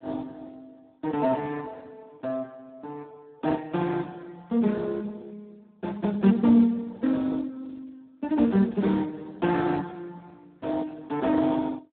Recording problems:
phone line; 220 Hz to 2.2 kHz, Speex

